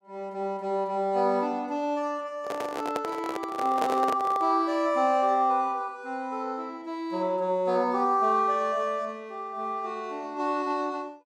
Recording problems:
handling noise; from 2.5 to 4.5 s; peak +2 dB vs average level

